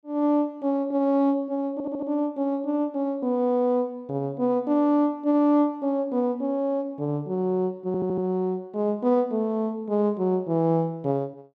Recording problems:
audio stuttering; at 1.5 s and at 8 s

